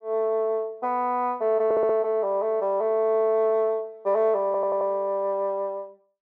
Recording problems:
audio stuttering; at 1.5 s and at 4.5 s

